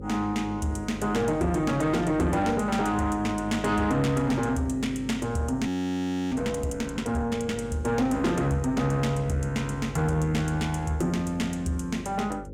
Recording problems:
distorted audio; soft clipping, signal-to-distortion ratio 11 dB
mains hum; 50 Hz, harmonics up to 550 Hz, SNR 13 dB
audio freezing; at 5.5 s for 0.5 s

